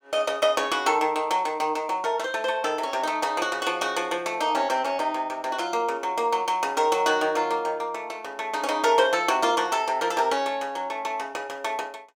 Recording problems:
none

